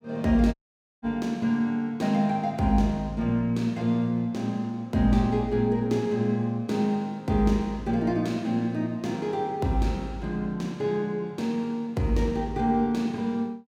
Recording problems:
audio cutting out; at 0.5 s

